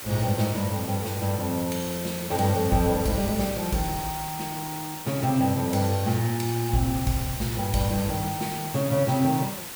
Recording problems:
background hiss; slope -1 dB per octave, SNR 8 dB

